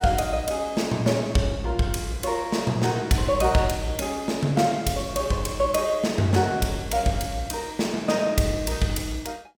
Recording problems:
none

